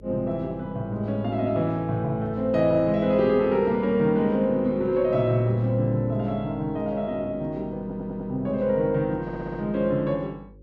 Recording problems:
electrical hum; 50 Hz, harmonics up to 550 Hz, SNR 22 dB
stutter; at 8 s and at 9 s

